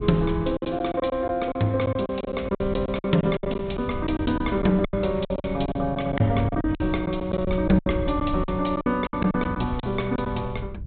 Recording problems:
treble cut off; nothing above 4 kHz
wind on the microphone; below 110 Hz, SNR 10 dB
packet loss; 13% of the sound replaced, filled with silence

